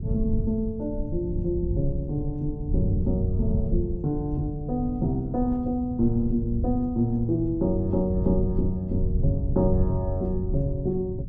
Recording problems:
low-frequency rumble; below 110 Hz, SNR 4 dB

